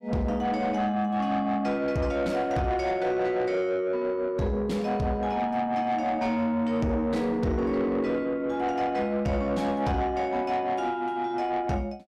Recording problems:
distortion; soft clipping, signal-to-distortion ratio 11 dB

